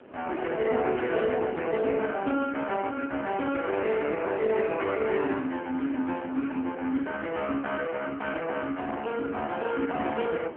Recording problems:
phone line; 240 Hz to 3.3 kHz, AMR-NB
wind noise; below 730 Hz, SNR 16 dB

